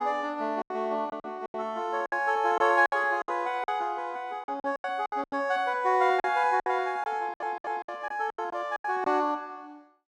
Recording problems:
packet loss; 12% of the sound replaced, filled with silence
stutter; at 7 s

